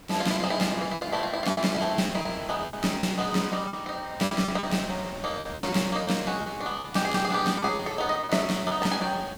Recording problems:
background hiss; SNR 19 dB
wind on the microphone; below 2.7 kHz, SNR 20 dB
lost packets; 11% of the sound replaced, filled with repeated pitch periods

